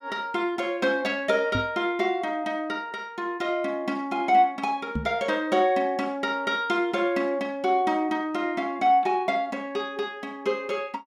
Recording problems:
microphone bump; at 1.5 s and at 5 s; peak +1 dB vs average level

